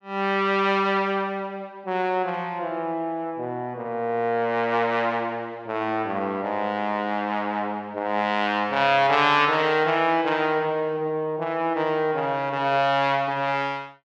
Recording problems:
none

